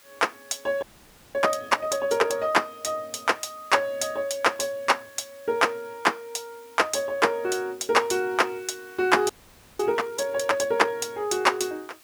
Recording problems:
hiss; slope 0 dB per octave, SNR 26 dB
audio freezing; at 1 s for 0.5 s and at 9.5 s

